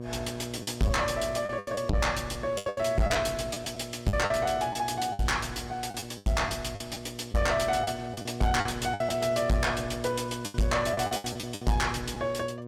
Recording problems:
distorted audio; soft clipping, signal-to-distortion ratio 6 dB
hum; 60 Hz, harmonics up to 1.2 kHz, SNR 10 dB
lost packets; 11% of the sound replaced, filled with the last packet

